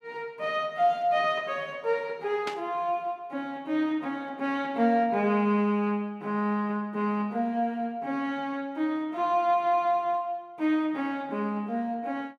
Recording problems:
static burst; at 2.5 s; peak -3 dB vs average level

